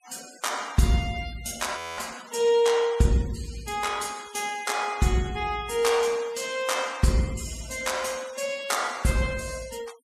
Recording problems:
noise reduction artefacts; signal-to-artefact ratio 18 dB
frozen audio; at 2 s

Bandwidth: 14.5 kHz